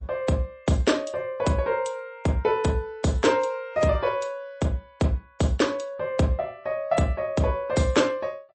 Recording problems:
codec artefacts; MP3, log-spectral distance 2 dB, nothing above 8.2 kHz

